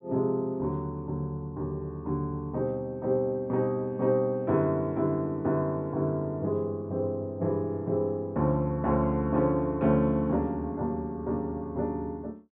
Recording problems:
treble missing; nothing above 4 kHz

